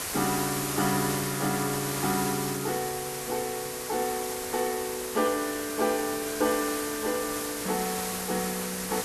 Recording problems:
background hiss; slope -2 dB per octave, SNR 3 dB

